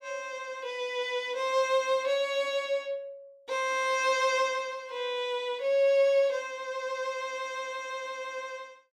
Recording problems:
none

